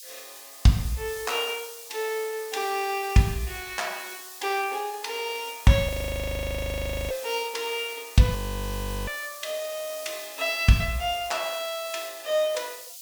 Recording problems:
hiss; SNR 13 dB
audio freezing; at 6 s for 1 s and at 8.5 s for 0.5 s

